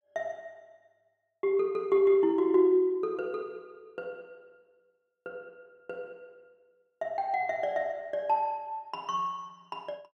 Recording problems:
none

